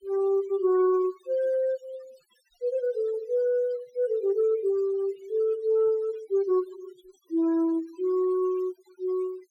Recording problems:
denoising artefacts; signal-to-artefact ratio 24 dB

